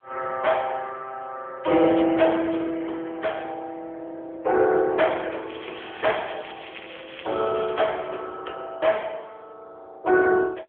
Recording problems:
phone line; 340 Hz to 3.4 kHz, AMR-NB
crackling; at 1.5 s and from 5.5 to 8 s; loose cable, SNR 16 dB

